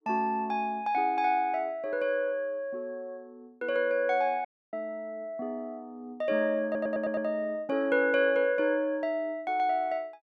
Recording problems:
dropout; at 4.5 s
stutter; at 6.5 s

